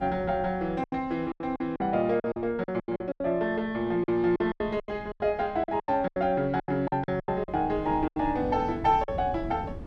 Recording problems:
wind noise; below 280 Hz, SNR 16 dB
lost packets; 15% of the sound replaced, filled with silence

